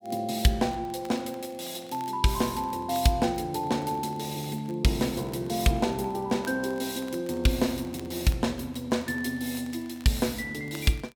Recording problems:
crackle; vinyl, SNR 26 dB

